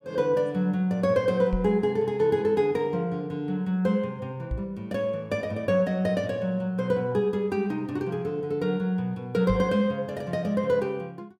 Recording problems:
microphone thump; at 1.5 s, at 4.5 s and at 9.5 s; peak -1 dB vs average level

